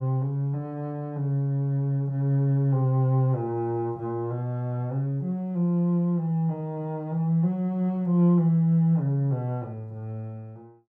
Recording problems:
none

